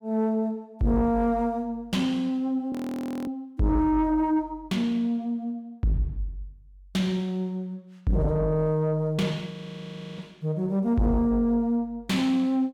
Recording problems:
distorted audio; soft clipping, signal-to-distortion ratio 10 dB
audio freezing; at 2.5 s for 0.5 s and at 9.5 s for 0.5 s

